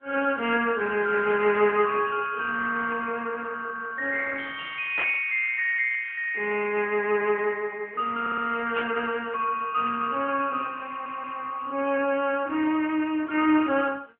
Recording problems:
phone line; 240 Hz to 3.1 kHz, AMR-NB
burst of static; at 5 s and at 9 s; peak 0 dB vs average level
stutter; at 8 s and at 11 s

